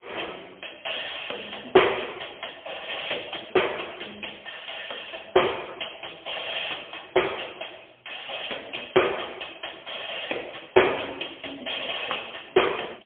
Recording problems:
phone line; 280 Hz to 3.4 kHz, AMR-NB, then MP3

